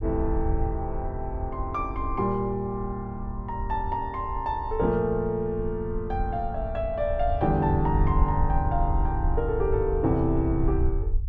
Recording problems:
rumble; below 72 Hz, SNR 4 dB

